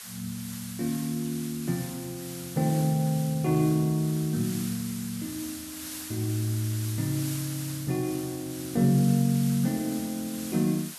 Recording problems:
hiss; slope +2 dB per octave, SNR 11 dB

